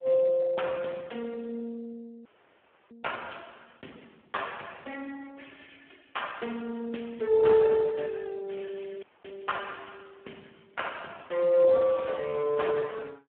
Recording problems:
telephone audio; 190 Hz to 3.4 kHz, Speex
audio cutting out; at 2.5 s for 0.5 s and at 9 s

